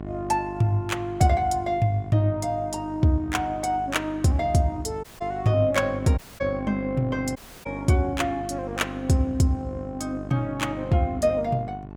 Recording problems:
hum; 50 Hz, harmonics up to 1.4 kHz, SNR 13 dB
audio cutting out; at 5 s, at 6 s and at 7.5 s

